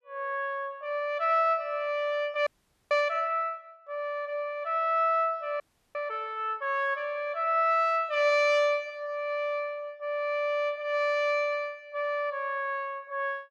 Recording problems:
audio freezing; at 2.5 s and at 5.5 s

